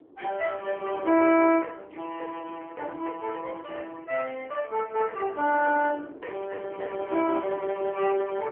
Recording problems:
phone line; 260 Hz to 3.1 kHz, AMR-NB
wind on the microphone; below 470 Hz, SNR 19 dB

